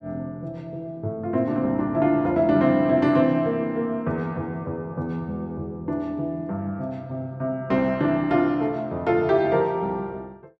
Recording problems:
none

